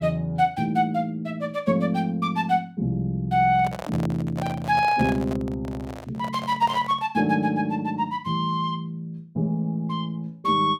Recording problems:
microphone handling noise; from 3.5 to 7 s; peak -6 dB vs average level

